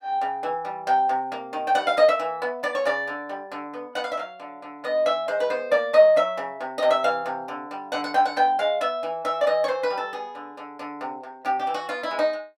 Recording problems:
none

